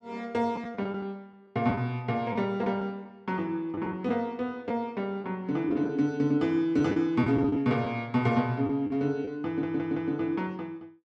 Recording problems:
lost packets; 5% of the sound replaced, filled with the last packet
stutter; at 9.5 s

